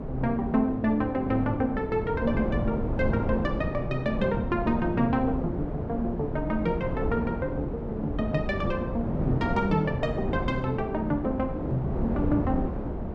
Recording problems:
wind noise; below 370 Hz, SNR 3 dB

